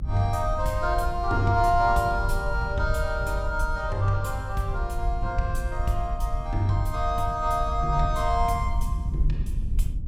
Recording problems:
rumble; below 62 Hz, SNR 4 dB

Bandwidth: 16.5 kHz